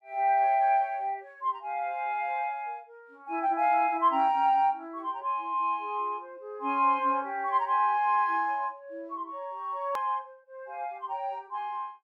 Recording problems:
click at an edit; at 10 s

